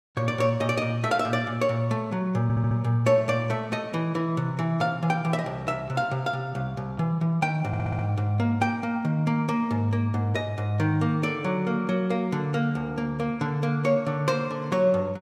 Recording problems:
stutter; at 2.5 s and at 7.5 s

